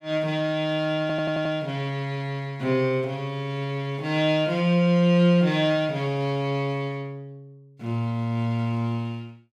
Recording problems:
stutter; at 1 s

